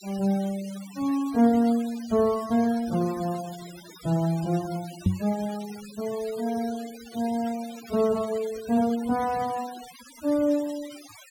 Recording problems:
denoising artefacts; signal-to-artefact ratio 18 dB
knock on the microphone; at 5 s; peak +7 dB vs average level

